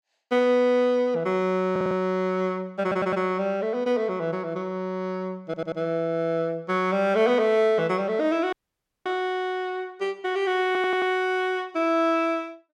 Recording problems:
audio stuttering; 4 times, first at 1.5 s
dropout; at 8.5 s for 0.5 s

